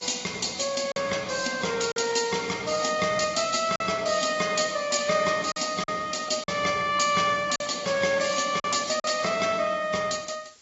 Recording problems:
treble missing; nothing above 7.1 kHz
codec artefacts; AAC, log-spectral distance 6 dB
hiss; SNR 27 dB
lost packets; 3% of the sound replaced, filled with silence
crackle; from 7.5 to 8.5 s; loose cable, SNR 22 dB

